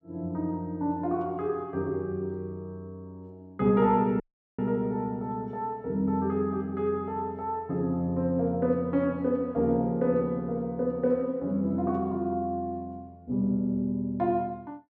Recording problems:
dropout; at 4 s

